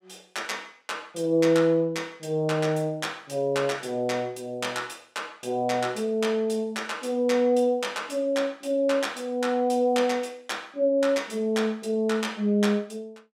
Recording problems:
none

